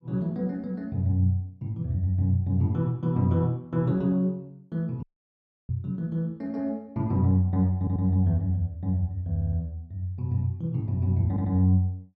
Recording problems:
audio cutting out; at 5 s for 0.5 s
stutter; at 8 s, at 9.5 s and at 11 s

